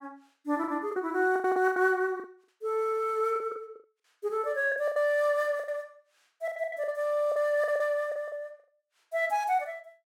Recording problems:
packet loss; 13% of the sound replaced, filled with the last packet

